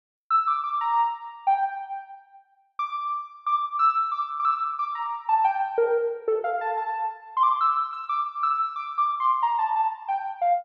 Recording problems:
none

